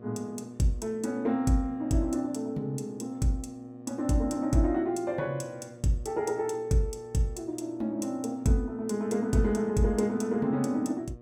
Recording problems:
hum; 60 Hz, harmonics up to 1.2 kHz, SNR 19 dB

